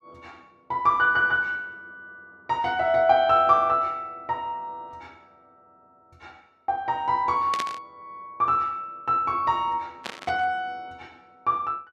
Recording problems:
burst of static; at 7.5 s and at 10 s; peak -3 dB vs average level

